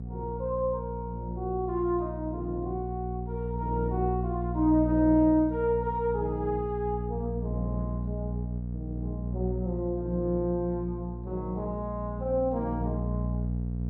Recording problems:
hum; 60 Hz, harmonics up to 480 Hz, SNR 4 dB

